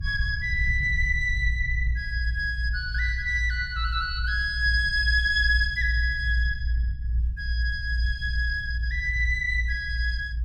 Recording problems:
low-frequency rumble; below 60 Hz, strongest tone 58 Hz, SNR 3 dB

